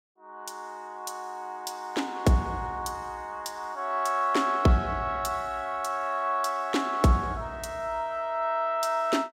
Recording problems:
none

